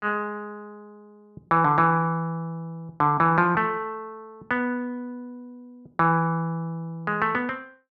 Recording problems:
none

